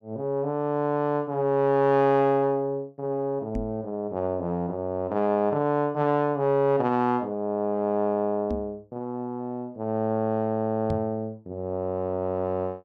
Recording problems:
knock on the microphone; at 3.5 s, at 8.5 s and at 11 s; peak -2 dB vs average level

